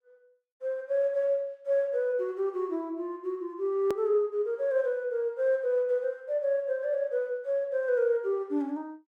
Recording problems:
edit click; at 4 s

